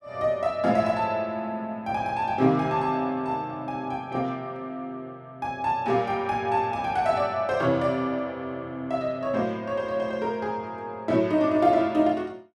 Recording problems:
none

